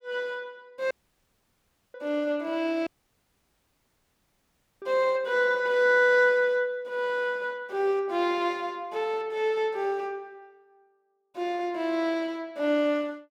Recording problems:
audio cutting out; at 1 s for 1 s and at 3 s for 2 s

